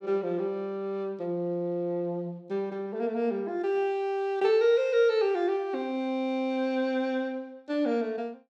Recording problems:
none

